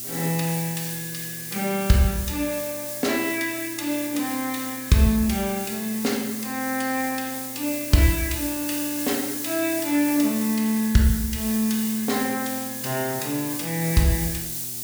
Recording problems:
hum; 60 Hz, harmonics up to 1.1 kHz, SNR 23 dB
background hiss; SNR 5 dB

